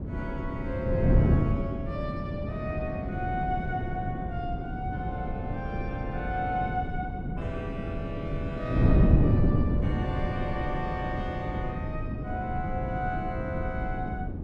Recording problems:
wind noise; below 220 Hz, SNR -5 dB

